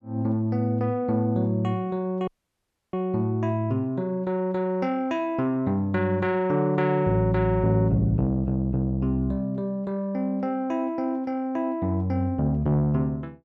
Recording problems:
audio cutting out; at 2.5 s for 0.5 s

